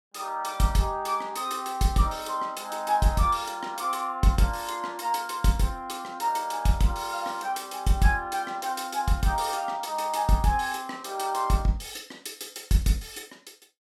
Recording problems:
none

